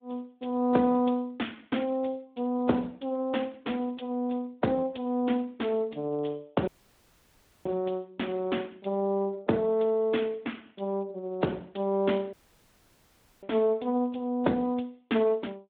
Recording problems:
telephone audio; 150 Hz to 3.6 kHz, Speex
dropout; at 6.5 s for 1 s and at 12 s for 1 s

